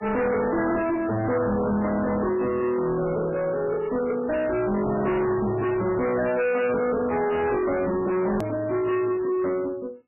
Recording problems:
lossy codec; MP3, log-spectral distance 3 dB, nothing above 2.4 kHz
distortion; soft clipping, signal-to-distortion ratio 6 dB
edit click; at 8.5 s

